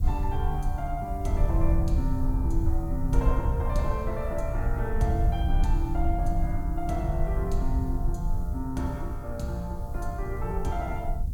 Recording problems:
hiss; SNR 25 dB
low-frequency rumble; below 70 Hz, SNR -2 dB

